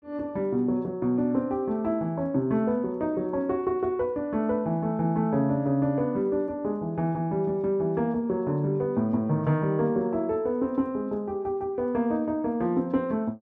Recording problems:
none

